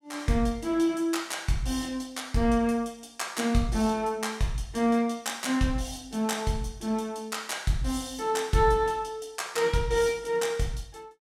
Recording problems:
none

